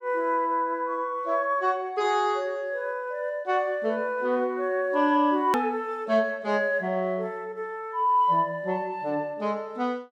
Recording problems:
click at an edit; at 5.5 s

